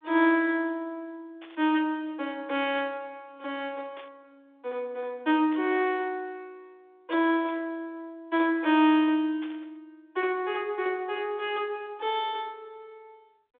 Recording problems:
telephone audio; 260 Hz to 3.6 kHz, G.726
static burst; 5 times, first at 1.5 s; peak -14 dB vs average level

